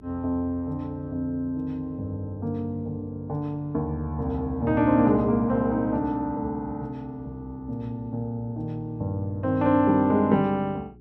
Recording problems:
electrical hum; 60 Hz, harmonics up to 420 Hz, SNR 24 dB

